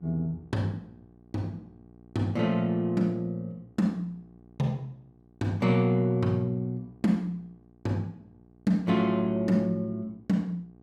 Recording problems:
hum; 60 Hz, harmonics up to 840 Hz, SNR 27 dB

